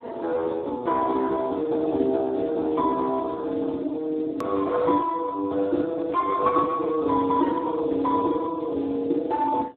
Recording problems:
phone line; 240 Hz to 2 kHz, Speex
hard cut with a click; at 4.5 s

